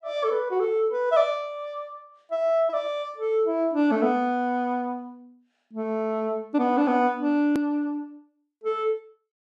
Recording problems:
edit click; at 7.5 s

